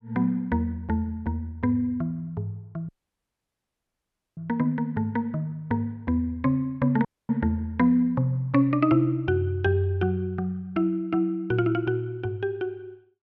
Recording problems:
dropout; at 3 s for 1.5 s and at 7 s

